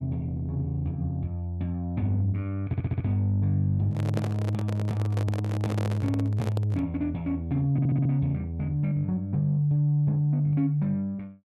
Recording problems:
stutter; at 2.5 s and at 7.5 s
handling noise; from 4 to 7 s; peak -2 dB vs average level

